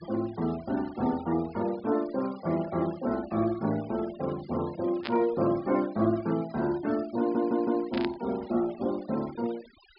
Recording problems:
treble missing; nothing above 5.5 kHz
denoising artefacts; signal-to-artefact ratio 20 dB
burst of static; at 5 s and at 8 s; peak -1 dB vs average level
stutter; at 7 s

